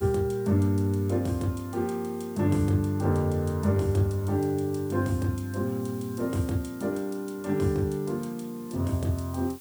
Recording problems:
background hiss; SNR 22 dB

